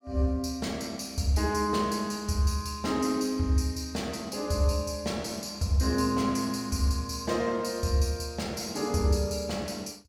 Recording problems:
none

